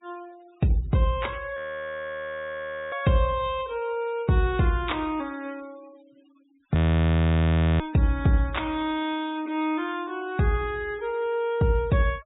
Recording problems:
treble missing; nothing above 4 kHz
noise reduction artefacts; signal-to-artefact ratio 25 dB
frozen audio; at 1.5 s for 1.5 s and at 7 s for 1 s

